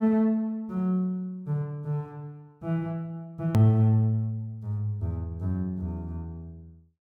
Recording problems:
hard cut with a click; at 3.5 s

